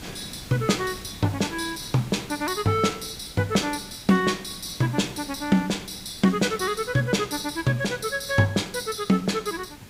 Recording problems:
background hiss; SNR 18 dB

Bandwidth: 15.5 kHz